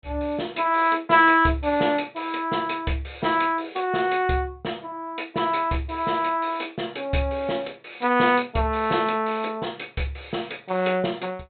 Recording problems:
treble missing; nothing above 4 kHz

